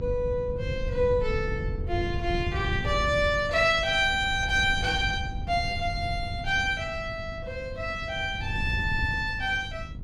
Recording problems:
electrical hum; 50 Hz, harmonics up to 700 Hz, SNR 19 dB
wind on the microphone; below 120 Hz, SNR 8 dB

